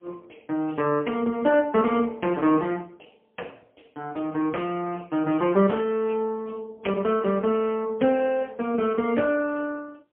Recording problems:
telephone audio; 260 Hz to 3 kHz, AMR-NB, then MP3

